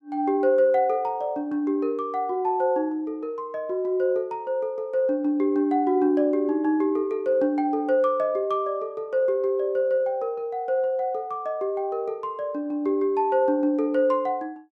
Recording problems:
none

